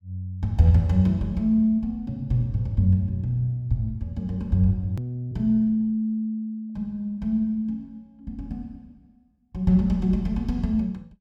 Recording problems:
edit click; at 5 s

